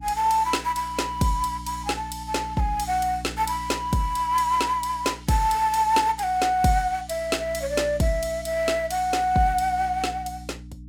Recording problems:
hum; 60 Hz, harmonics up to 300 Hz, SNR 17 dB

